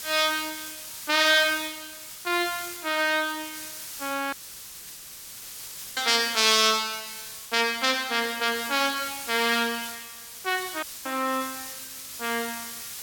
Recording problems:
background hiss; slope +3 dB per octave, SNR 11 dB
audio cutting out; at 4.5 s for 1.5 s and at 11 s

